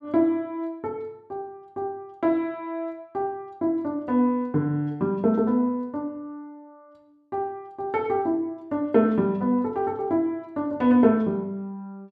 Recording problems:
none

